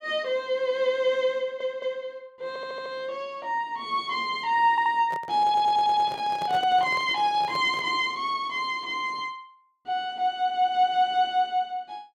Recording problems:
audio stuttering; 4 times, first at 1.5 s
handling noise; from 5 to 8 s; peak -8 dB vs average level

